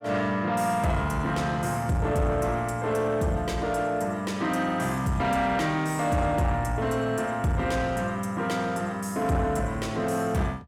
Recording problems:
distorted audio; soft clipping, signal-to-distortion ratio 11 dB

